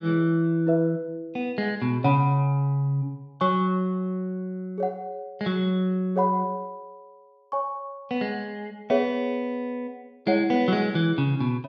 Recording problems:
none

